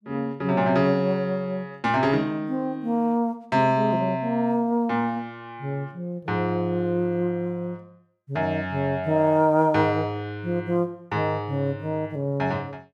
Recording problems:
none

